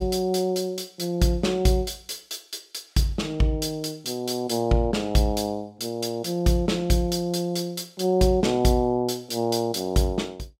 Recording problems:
none

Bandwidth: 16 kHz